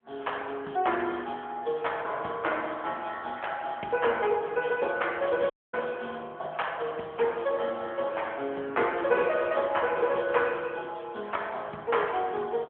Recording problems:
telephone audio; 280 Hz to 3.3 kHz, AMR-NB
dropout; at 5.5 s

